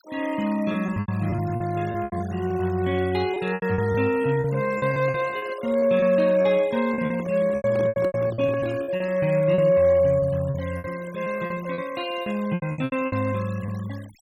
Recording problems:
noise reduction artefacts; signal-to-artefact ratio 20 dB
lost packets; 14% of the sound replaced, filled with repeated pitch periods
microphone handling noise; from 7 to 9 s; peak -6 dB vs average level

